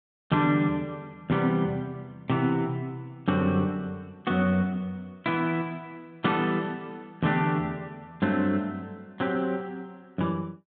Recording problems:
treble missing; nothing above 4 kHz

